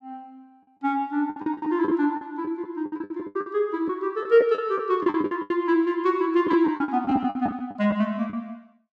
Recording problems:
packet loss; 15% of the sound replaced, filled with the last packet

